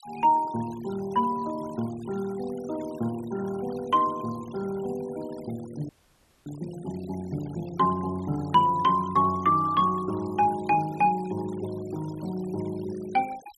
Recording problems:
noise reduction artefacts; signal-to-artefact ratio 21 dB
audio freezing; at 6 s for 0.5 s

